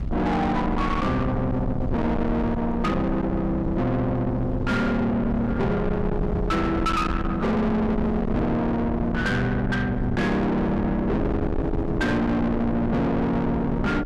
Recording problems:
distortion; soft clipping, signal-to-distortion ratio 6 dB
low-frequency rumble; below 420 Hz, SNR 6 dB
wind noise; below 420 Hz, SNR 10 dB

